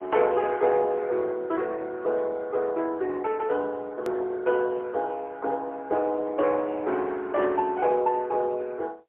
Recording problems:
phone line; 280 Hz to 3.4 kHz, AMR-NB, then MP3
hard cut with a click; at 4 s

